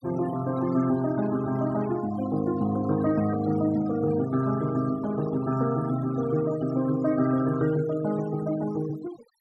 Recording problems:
denoising artefacts; signal-to-artefact ratio 16 dB

